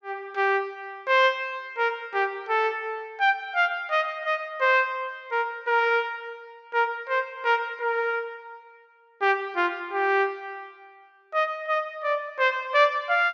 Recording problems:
low-pass filter; nothing above 8 kHz

